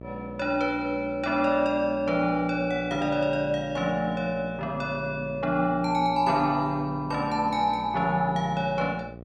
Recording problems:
hum; 60 Hz, harmonics up to 1.2 kHz, SNR 17 dB

